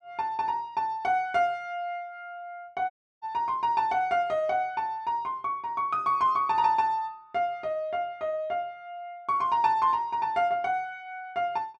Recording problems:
dropout; at 3 s

